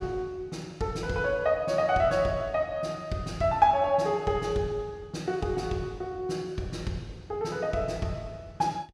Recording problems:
none

